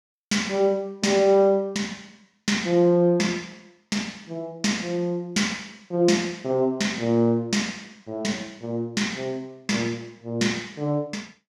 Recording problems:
none

